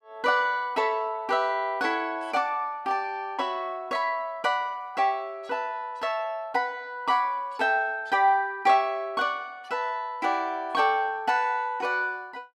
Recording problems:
none

